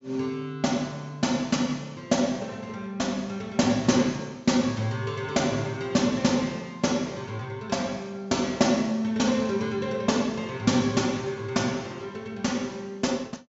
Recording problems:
treble cut off; nothing above 8 kHz

